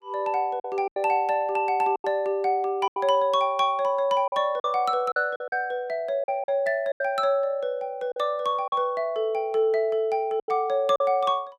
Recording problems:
packet loss; 7% of the sound replaced, filled with silence

